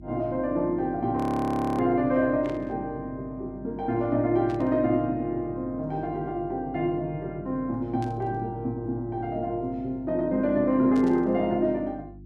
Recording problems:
hum; 50 Hz, harmonics up to 350 Hz, SNR 19 dB
frozen audio; at 1 s for 0.5 s
burst of static; 4 times, first at 2.5 s; peak -14 dB vs average level

